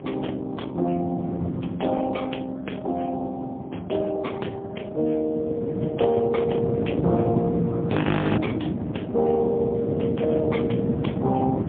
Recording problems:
telephone audio; 130 Hz to 3.4 kHz, AMR-NB, then MP3
wind noise; below 340 Hz, SNR 4 dB
frozen audio; at 8 s

